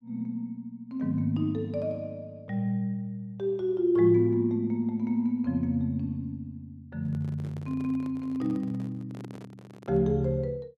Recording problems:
handling noise; from 7 to 10 s; peak -10 dB vs average level

